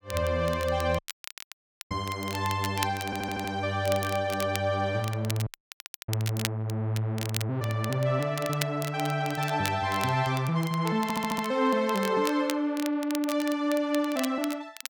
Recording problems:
crackling; vinyl, SNR 11 dB
dropout; at 1 s for 1 s and at 5.5 s for 0.5 s
stutter; at 3 s and at 11 s

